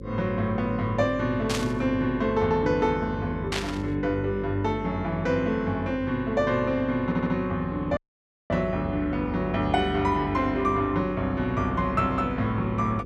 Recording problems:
electrical hum; 50 Hz, harmonics up to 550 Hz, SNR 11 dB
burst of static; at 1.5 s and at 3.5 s; peak +1 dB vs average level
stutter; at 7 s
dropout; at 8 s for 0.5 s

